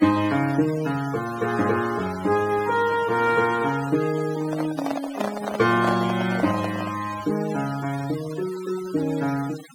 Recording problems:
denoising artefacts; signal-to-artefact ratio 15 dB
handling noise; from 4.5 to 7 s; peak +1 dB vs average level

